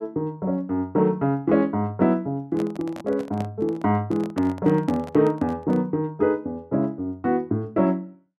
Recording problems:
handling noise; from 2.5 to 6 s; peak -6 dB vs average level

